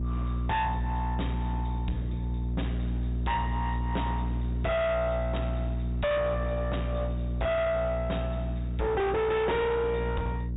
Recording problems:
treble missing; nothing above 4 kHz
distortion; hard clipping, uneven, signal-to-distortion ratio 6 dB
hum; 60 Hz, harmonics up to 780 Hz, SNR 2 dB

